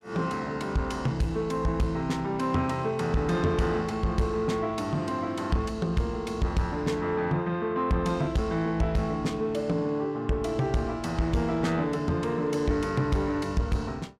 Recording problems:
distorted audio; soft clipping, signal-to-distortion ratio 11 dB

